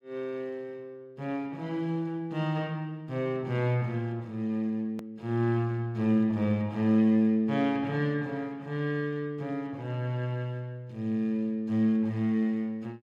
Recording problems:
click at an edit; at 5 s

